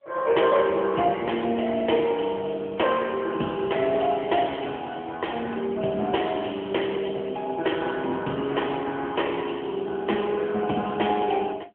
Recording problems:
telephone audio; 190 Hz to 3.3 kHz, AMR-NB

